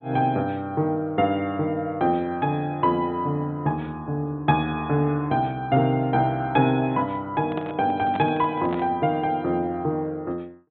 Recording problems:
treble missing; nothing above 4 kHz
microphone handling noise; from 7.5 to 9 s; peak -4 dB vs average level

